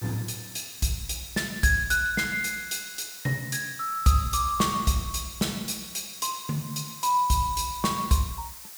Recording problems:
hiss; slope +2 dB per octave, SNR 14 dB

